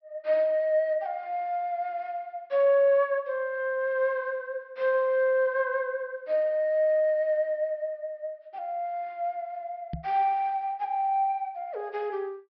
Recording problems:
treble missing; nothing above 5.5 kHz
knock on the microphone; at 10 s; peak -3 dB vs average level

